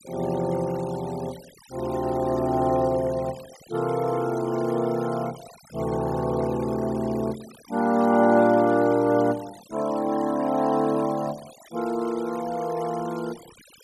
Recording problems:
denoising artefacts; signal-to-artefact ratio 21 dB

